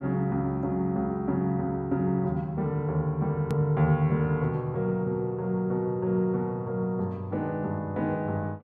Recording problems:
click at an edit; at 3.5 s

